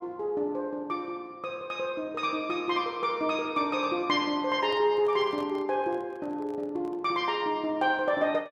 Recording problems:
handling noise; from 4.5 to 7 s; peak -11 dB vs average level

